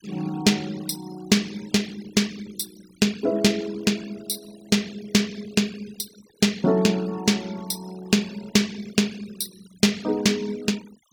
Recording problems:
denoising artefacts; signal-to-artefact ratio 21 dB

